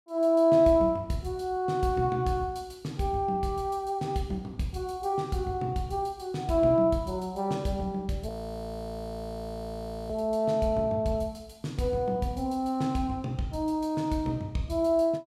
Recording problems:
audio freezing; at 8.5 s for 2 s

